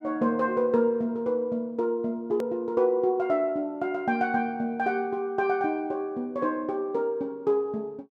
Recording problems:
hard cut with a click; at 2.5 s

